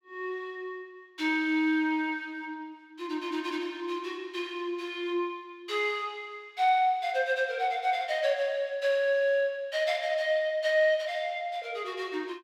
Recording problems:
none

